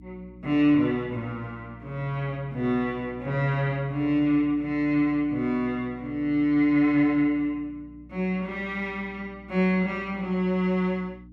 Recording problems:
mains hum; 60 Hz, harmonics up to 300 Hz, SNR 23 dB

